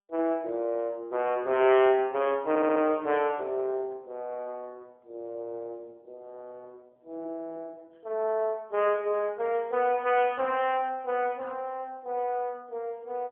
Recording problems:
phone line; 280 Hz to 3.3 kHz, AMR-NB
stutter; at 2.5 s

